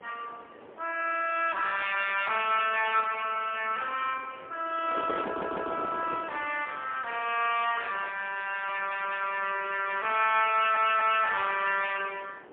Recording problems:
phone line; 340 Hz to 3.3 kHz, AMR-NB, then MP3
wind on the microphone; below 790 Hz, SNR 16 dB
stutter; at 5.5 s and at 11 s

